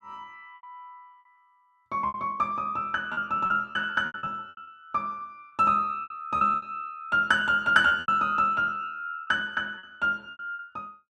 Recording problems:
lost packets; 11% of the sound replaced, filled with repeated pitch periods

